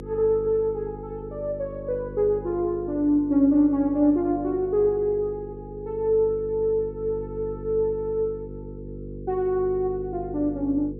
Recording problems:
hum; 50 Hz, harmonics up to 500 Hz, SNR 14 dB

